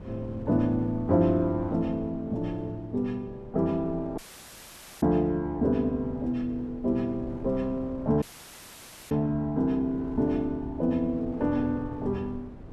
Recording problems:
wind noise; below 290 Hz, SNR 16 dB
dropout; at 4 s for 1 s and at 8 s for 1 s

